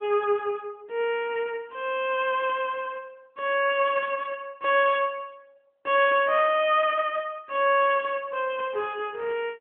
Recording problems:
phone line; 220 Hz to 3.3 kHz, AMR-NB

